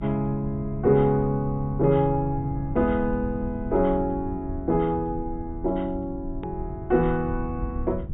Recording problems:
treble missing; nothing above 4 kHz
low-frequency rumble; below 100 Hz, SNR 11 dB
click at an edit; at 6.5 s

